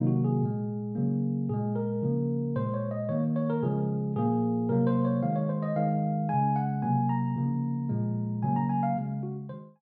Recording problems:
none

